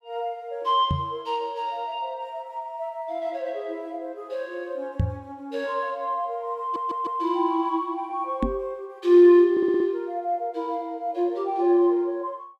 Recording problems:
knock on the microphone; at 1 s, at 5 s and at 8.5 s; peak +5 dB vs average level
audio stuttering; at 6.5 s and at 9.5 s

